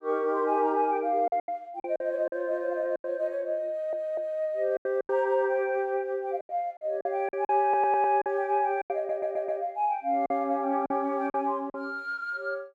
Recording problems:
packet loss; 9% of the sound replaced, filled with silence
audio stuttering; at 3.5 s, at 7.5 s and at 9 s

